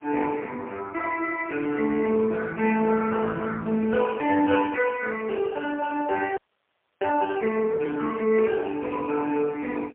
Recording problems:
phone line; 340 Hz to 2.5 kHz, AMR-NB, then MP3
frozen audio; at 6.5 s for 0.5 s

